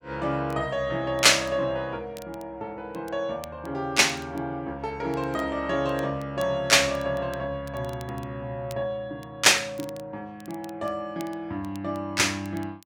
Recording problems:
crackling; vinyl, SNR 27 dB

